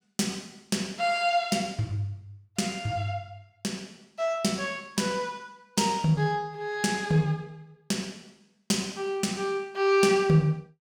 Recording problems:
none

